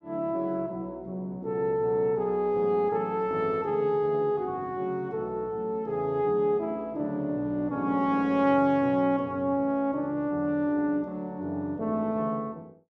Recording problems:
none

